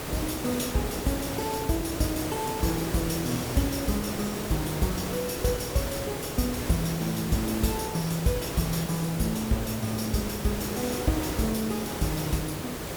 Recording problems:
hiss; slope -5 dB per octave, SNR 3 dB

